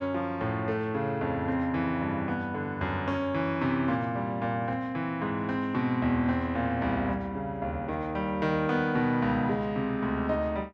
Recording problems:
none

